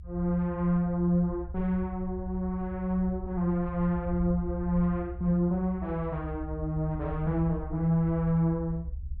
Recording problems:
rumble; below 76 Hz, strongest tone 66 Hz, SNR 11 dB

